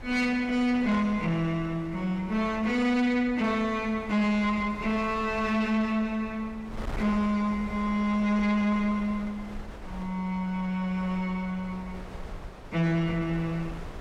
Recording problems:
distortion; soft clipping, signal-to-distortion ratio 12 dB
wind on the microphone; below 580 Hz, SNR 15 dB

